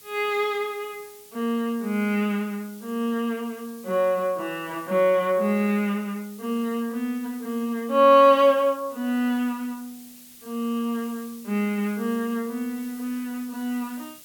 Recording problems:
hiss; SNR 21 dB

